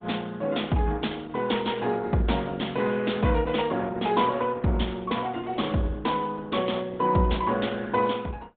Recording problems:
treble cut off; nothing above 3.7 kHz
lossy codec; Opus, log-spectral distance 3 dB

